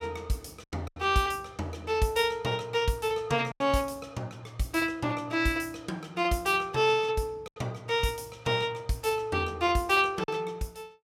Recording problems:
lost packets; 3% of the sound replaced, filled with silence

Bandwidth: 16 kHz